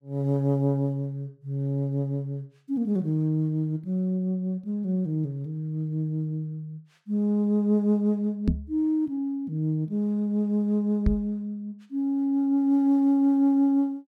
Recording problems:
microphone thump; at 8.5 s and at 11 s; peak +6 dB vs average level

